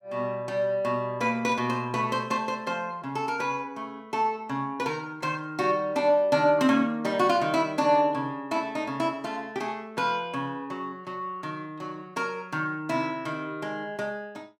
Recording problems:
static burst; at 1.5 s; peak -15 dB vs average level

